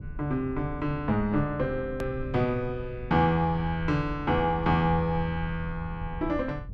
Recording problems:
low-frequency rumble; below 100 Hz, SNR 13 dB
click at an edit; at 2 s

